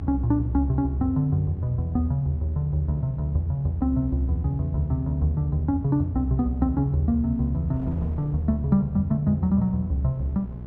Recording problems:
hum; 60 Hz, harmonics up to 660 Hz, SNR 14 dB
wind noise; below 230 Hz, SNR 22 dB

